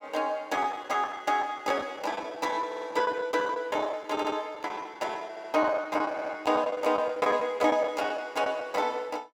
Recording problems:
lost packets; 14% of the sound replaced, filled with the last packet
audio stuttering; 4 times, first at 2.5 s

